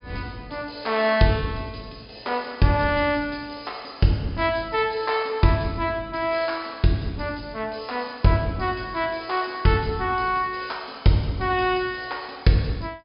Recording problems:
low-pass filter; nothing above 5.5 kHz

